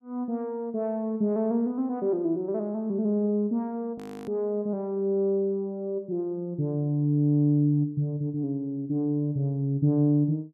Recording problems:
frozen audio; at 4 s

